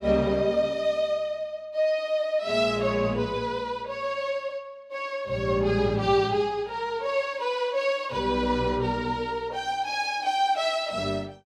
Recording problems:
none

